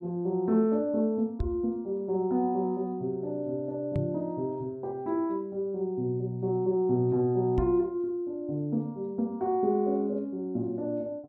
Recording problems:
microphone thump; at 1.5 s, at 4 s and at 7.5 s; peak +2 dB vs average level

